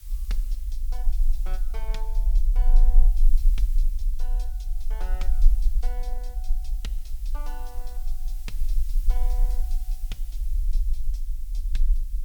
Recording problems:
background hiss; slope +3 dB per octave, SNR 5 dB
low-frequency rumble; below 34 Hz, strongest tone 22 Hz, SNR -19 dB

